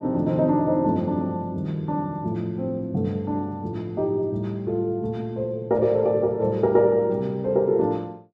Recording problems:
none

